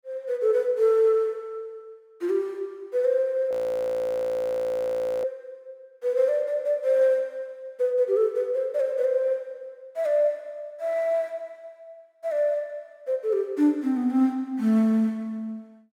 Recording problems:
frozen audio; at 3.5 s for 1.5 s

